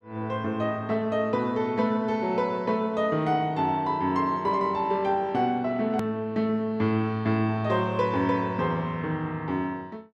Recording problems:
click at an edit; at 6 s

